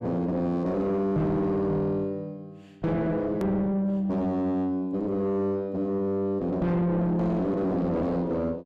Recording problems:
distorted audio; soft clipping, signal-to-distortion ratio 7 dB
hard cut with a click; at 3.5 s

